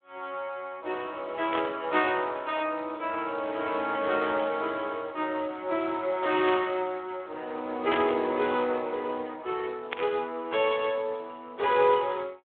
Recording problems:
phone line; 280 Hz to 3.7 kHz, Speex
burst of static; 4 times, first at 1.5 s; peak +3 dB vs average level

